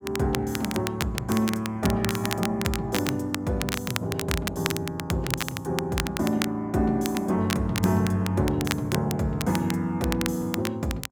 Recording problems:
crackling; vinyl, SNR 7 dB

